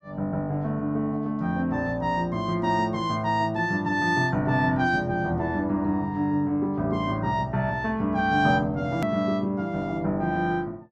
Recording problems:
hard cut with a click; at 9 s

